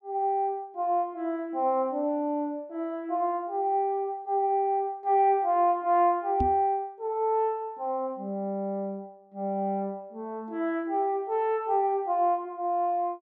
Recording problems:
knock on the microphone; at 6.5 s; peak +1 dB vs average level

